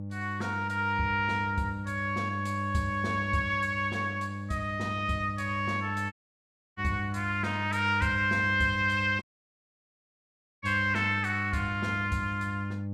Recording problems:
hum; 50 Hz, harmonics up to 600 Hz, SNR 7 dB
dropout; at 6 s for 0.5 s and at 9 s for 1.5 s

